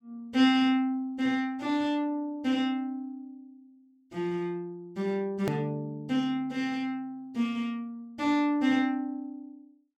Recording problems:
hard cut with a click; at 5.5 s

